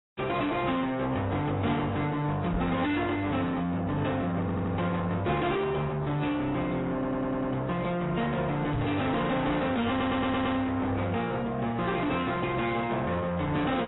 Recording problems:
codec artefacts; AAC, then AAC, log-spectral distance 3 dB, nothing above 3.8 kHz
distortion; soft clipping, signal-to-distortion ratio 7 dB
microphone thump; at 2.5 s and at 8.5 s; peak +4 dB vs average level
audio stuttering; at 4.5 s, at 7 s and at 10 s

